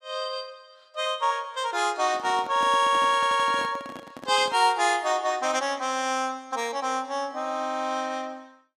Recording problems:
handling noise; from 2 to 4.5 s; peak -10 dB vs average level
audio stuttering; at 3 s

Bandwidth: 14.5 kHz